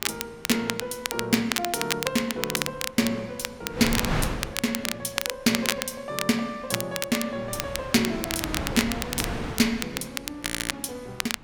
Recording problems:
wind noise; below 1.1 kHz, SNR 5 dB
crackle; vinyl, SNR 3 dB
audio freezing; at 10 s

